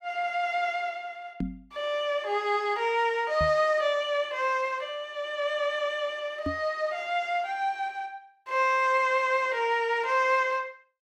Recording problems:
microphone bump; at 1.5 s, at 3.5 s and at 6.5 s; peak -1 dB vs average level

